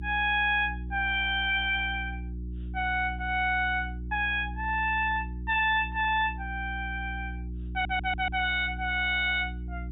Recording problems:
treble cut off; nothing above 4 kHz
distorted audio; soft clipping, signal-to-distortion ratio 11 dB
hum; 60 Hz, harmonics up to 360 Hz, SNR 10 dB
stutter; at 7.5 s

